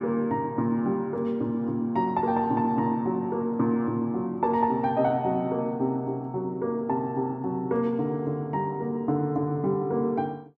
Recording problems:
none

